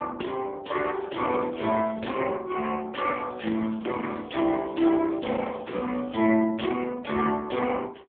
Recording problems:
telephone audio; 280 Hz to 2.9 kHz, AMR-NB
crackle; from 0.5 to 2 s and from 3 to 6.5 s; loose cable, SNR 27 dB

